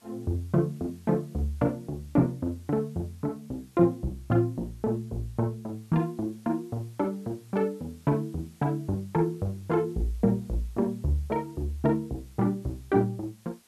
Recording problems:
background hiss; slope -1 dB per octave, SNR 29 dB

